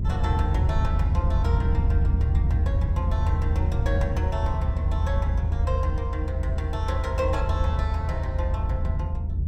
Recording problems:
low-frequency rumble; below 84 Hz, SNR -8 dB

